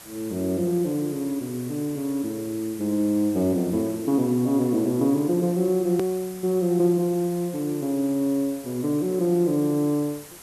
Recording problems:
hiss; slope -2 dB per octave, SNR 18 dB
edit click; at 6 s

